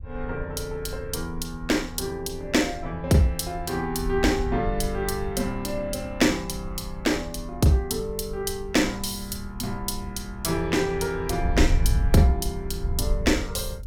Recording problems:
wind noise; below 72 Hz, SNR 8 dB

